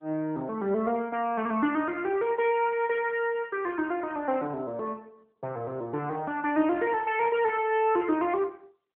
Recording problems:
telephone audio; 240 Hz to 3.2 kHz, AMR-NB

